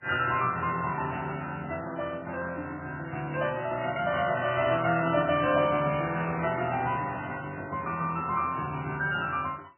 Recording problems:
lossy codec; MP3, log-spectral distance 4 dB, nothing above 2.7 kHz
handling noise; from 5 to 8.5 s; peak -12 dB vs average level

